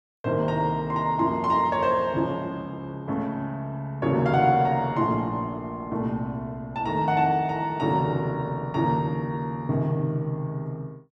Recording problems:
none

